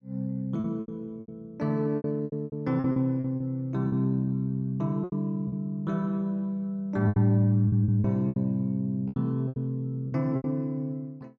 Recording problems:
lost packets; 12% of the sound replaced, filled with repeated pitch periods

